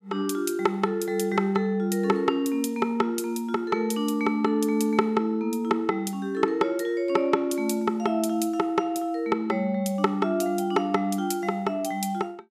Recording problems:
none

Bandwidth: 14.5 kHz